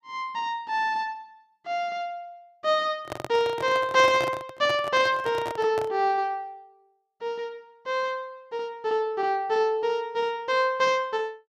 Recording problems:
handling noise; from 3 to 6 s; peak -3 dB vs average level

